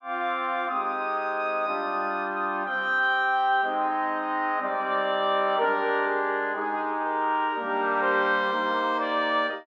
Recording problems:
none

